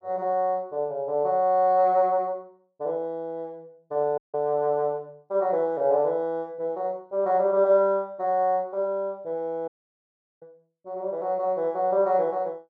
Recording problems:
audio cutting out; at 4 s and at 9.5 s for 0.5 s

